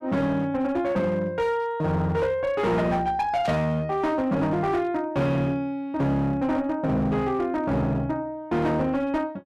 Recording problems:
distortion; hard clipping, uneven, signal-to-distortion ratio 10 dB
static burst; at 3.5 s; peak -9 dB vs average level

